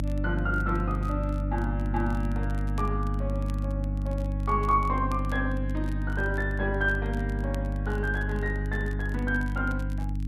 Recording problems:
hum; 50 Hz, harmonics up to 300 Hz, SNR 0 dB
crackle; vinyl, SNR 24 dB

